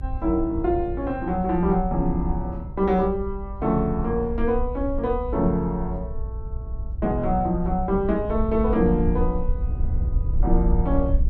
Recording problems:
low-frequency rumble; below 62 Hz, SNR 6 dB
wind on the microphone; below 260 Hz, SNR 17 dB

